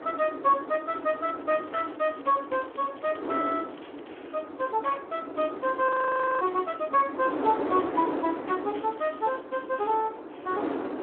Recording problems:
phone line; 240 Hz to 3.3 kHz, Speex
wind on the microphone; below 690 Hz, SNR 7 dB
crackle; from 1.5 to 4 s and at 9 s; loose cable, SNR 27 dB
frozen audio; at 6 s for 0.5 s

